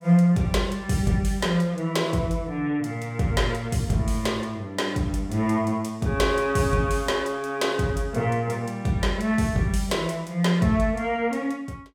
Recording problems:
none

